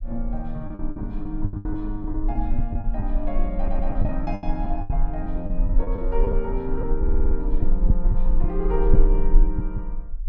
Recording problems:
rumble; below 36 Hz, strongest tone 20 Hz, SNR -4 dB
packet loss; 10% of the sound replaced, filled with the last packet
stutter; at 3.5 s and at 7 s

